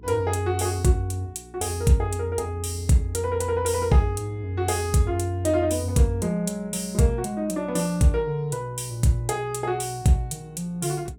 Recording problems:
hum; 60 Hz, harmonics up to 420 Hz, SNR 24 dB

